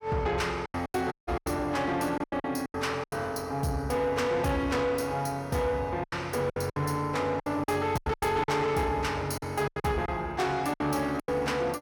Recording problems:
distortion; soft clipping, signal-to-distortion ratio 11 dB
lost packets; 12% of the sound replaced, filled with silence
dropout; at 1 s

